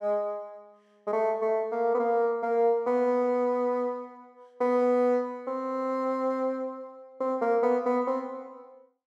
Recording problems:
none

